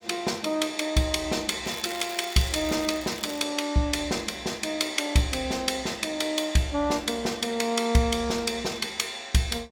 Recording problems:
crackling; from 1.5 to 3.5 s; loose cable, SNR 14 dB

